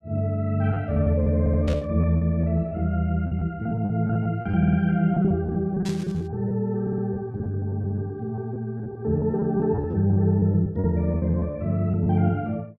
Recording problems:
lost packets; 13% of the sound replaced, filled with repeated pitch periods
audio stuttering; at 1.5 s, at 4.5 s and at 7 s
static burst; at 1.5 s and at 6 s; peak -9 dB vs average level

